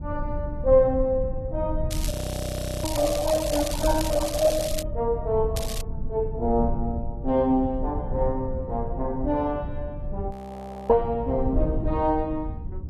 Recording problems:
codec artefacts; AAC, log-spectral distance 2 dB
rumble; below 98 Hz, SNR 7 dB
crackling; from 2 to 5 s and at 5.5 s; loose cable, SNR 8 dB
frozen audio; at 2 s for 0.5 s and at 10 s for 0.5 s

